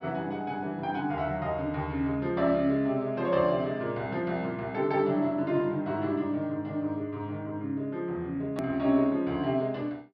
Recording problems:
treble missing; nothing above 5.5 kHz
hard cut with a click; at 8.5 s

